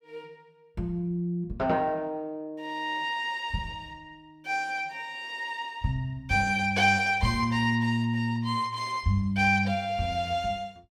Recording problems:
none

